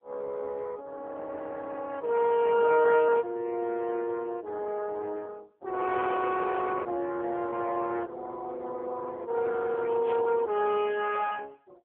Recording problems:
telephone audio; 300 Hz to 3.3 kHz, AMR-NB
static burst; at 10 s; peak -13 dB vs average level

